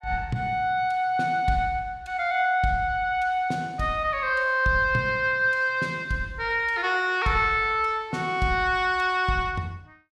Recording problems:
none

